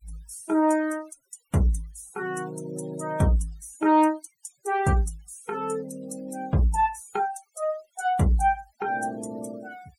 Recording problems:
denoising artefacts; signal-to-artefact ratio 22 dB

